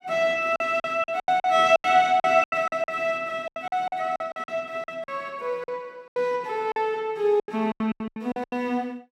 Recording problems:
packet loss; 17% of the sound replaced, filled with silence

